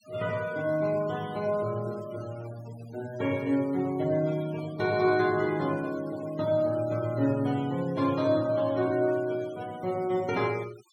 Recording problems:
denoising artefacts; signal-to-artefact ratio 22 dB

